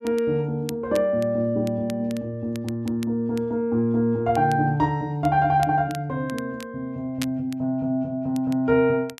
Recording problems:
crackling; vinyl, SNR 21 dB

